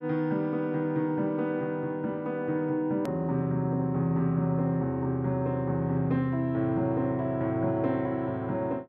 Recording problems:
click at an edit; at 3 s

